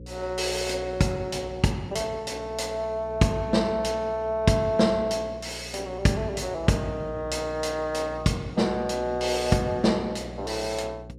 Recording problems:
hum; 60 Hz, harmonics up to 540 Hz, SNR 16 dB

